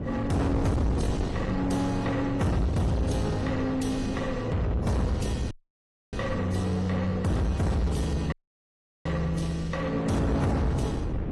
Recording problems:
lossy compression; AAC, then AAC, log-spectral distance 3 dB, nothing above 11.6 kHz
distortion; soft clipping, signal-to-distortion ratio 8 dB
wind noise; below 360 Hz, SNR 6 dB
dropout; at 5.5 s for 0.5 s and at 8.5 s for 0.5 s

